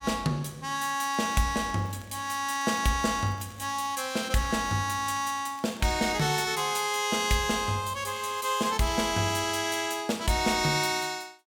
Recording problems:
crackling; from 1 to 6.5 s and from 8 to 9.5 s; loose cable, SNR 26 dB

